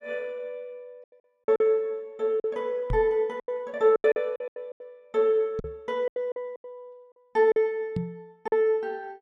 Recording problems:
lost packets; 11% of the sound replaced, filled with silence
microphone bump; at 3 s, at 5.5 s and at 8 s; peak 0 dB vs average level

